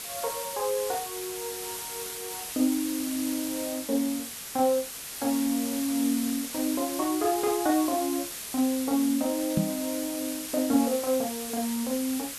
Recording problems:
background hiss; slope +1 dB per octave, SNR 6 dB
microphone thump; at 9.5 s; peak +6 dB vs average level

